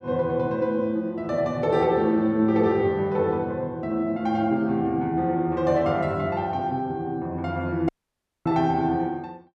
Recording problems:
dropout; at 8 s for 0.5 s

